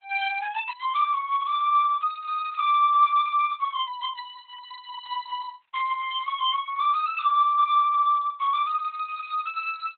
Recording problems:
lossy compression; Opus, log-spectral distance 3 dB, nothing above 3.6 kHz

